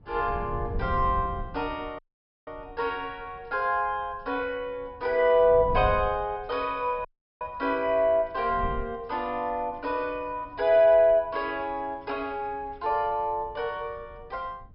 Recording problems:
low-pass filter; nothing above 5.3 kHz
wind on the microphone; below 110 Hz, SNR 11 dB
audio cutting out; at 2 s and at 7 s

